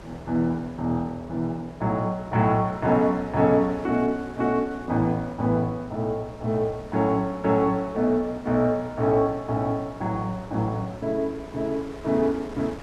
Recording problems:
hum; 60 Hz, harmonics up to 660 Hz, SNR 23 dB
wind on the microphone; below 1.3 kHz, SNR 20 dB

